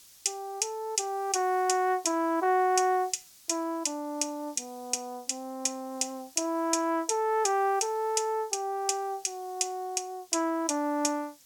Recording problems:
background hiss; SNR 24 dB

